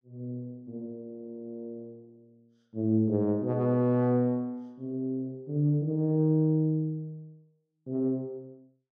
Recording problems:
none

